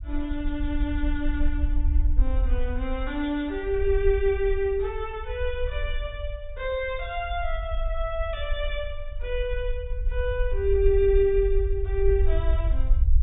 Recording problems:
treble cut off; nothing above 4 kHz
low-frequency rumble; below 56 Hz, SNR 2 dB

